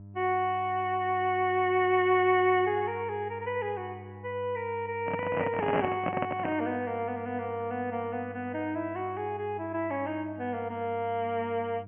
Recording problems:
treble cut off; nothing above 3.1 kHz
hum; 50 Hz, harmonics up to 700 Hz, SNR 17 dB
handling noise; from 5 to 6.5 s; peak +3 dB vs average level

